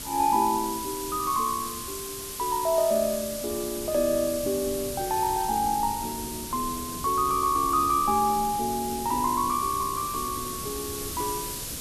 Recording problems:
hiss; slope +1 dB per octave, SNR 7 dB
wind on the microphone; below 320 Hz, SNR 17 dB

